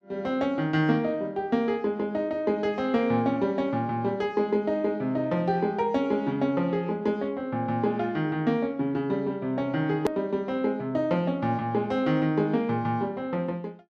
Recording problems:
hard cut with a click; at 10 s

